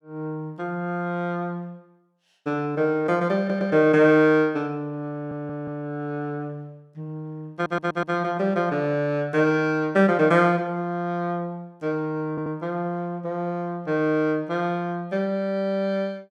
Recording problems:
audio stuttering; 4 times, first at 3.5 s

